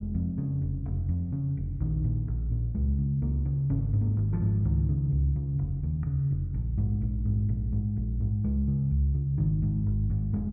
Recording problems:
none

